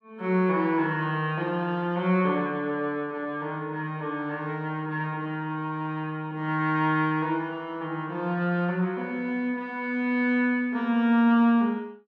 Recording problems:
none

